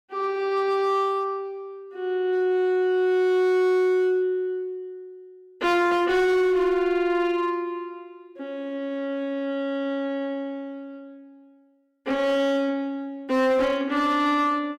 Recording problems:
distortion; hard clipping, uneven, signal-to-distortion ratio 11 dB

